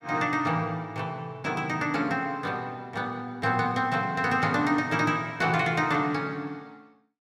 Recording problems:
none

